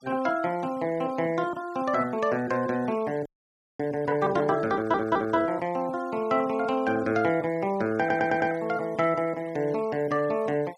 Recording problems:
denoising artefacts; signal-to-artefact ratio 24 dB
audio freezing; at 3.5 s for 0.5 s
audio stuttering; at 4.5 s and at 8 s

